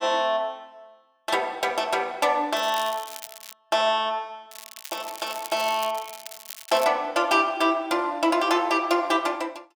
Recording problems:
crackling; at 2.5 s and from 4.5 to 7 s; loose cable, SNR 15 dB

